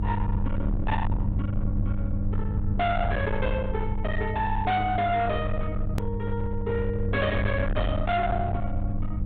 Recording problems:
treble cut off; nothing above 4 kHz
distorted audio; hard clipping, signal-to-distortion ratio 6 dB
hum; 50 Hz, harmonics up to 600 Hz, SNR 5 dB
low-frequency rumble; below 110 Hz, SNR 3 dB
hard cut with a click; at 6 s

